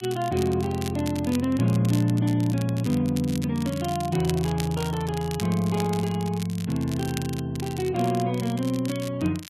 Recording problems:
lossy compression; Vorbis, log-spectral distance 2 dB, nothing above 11.3 kHz
crackle; vinyl, SNR 15 dB

